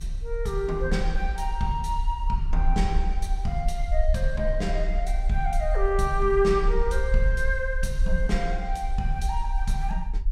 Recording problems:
low-frequency rumble; below 46 Hz, strongest tone 32 Hz, SNR 1 dB

